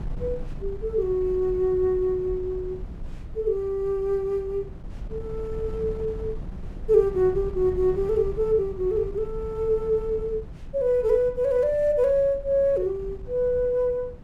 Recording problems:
wind noise; below 130 Hz, SNR 14 dB

